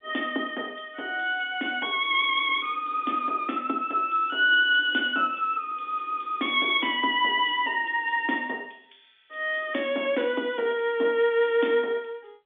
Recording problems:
telephone audio; 220 Hz to 3.6 kHz, G.711

